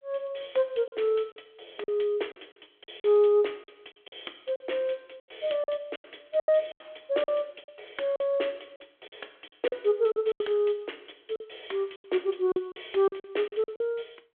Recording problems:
phone line; 300 Hz to 3.4 kHz, G.726
packet loss; 11% of the sound replaced, filled with silence

